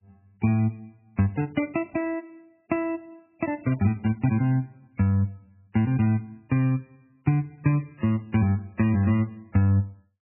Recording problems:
codec artefacts; MP3, log-spectral distance 2 dB, nothing above 2.4 kHz

